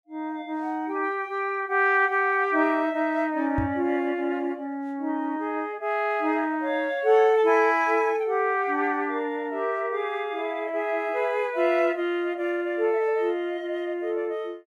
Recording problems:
microphone bump; at 3.5 s; peak 0 dB vs average level

